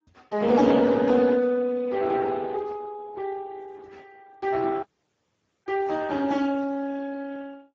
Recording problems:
codec artefacts; AAC, then Speex, log-spectral distance 3 dB
audio cutting out; at 5 s for 1 s

